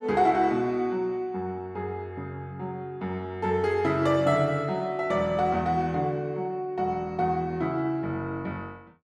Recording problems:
none

